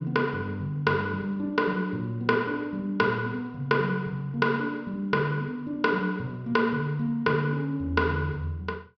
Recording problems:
low-pass filter; nothing above 5.9 kHz

